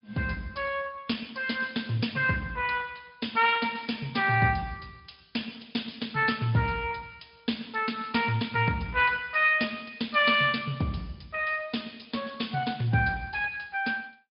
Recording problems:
treble cut off; nothing above 5.2 kHz
lossy compression; Speex, log-spectral distance 6 dB

